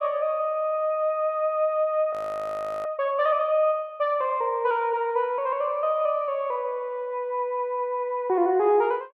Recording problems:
frozen audio; at 2 s for 0.5 s

